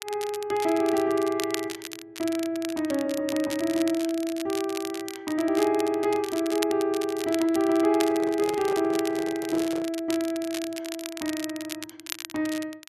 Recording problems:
crackle; vinyl, SNR 11 dB
microphone handling noise; from 8 to 10 s; peak -4 dB vs average level

